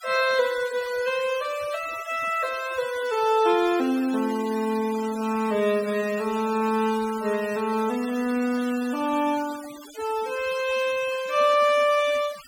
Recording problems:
denoising artefacts; signal-to-artefact ratio 16 dB

